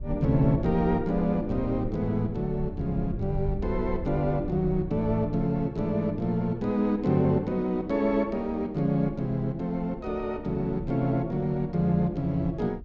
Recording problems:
low-frequency rumble; below 88 Hz, SNR 13 dB

